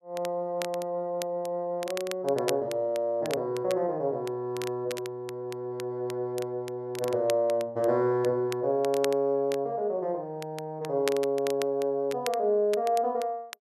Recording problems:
crackle; vinyl, SNR 15 dB

